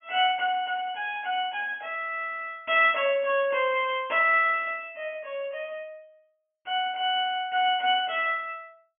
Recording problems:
low-pass filter; nothing above 3.3 kHz

